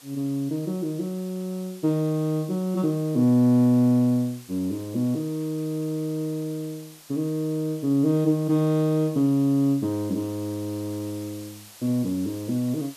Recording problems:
hiss; slope 0 dB per octave, SNR 21 dB

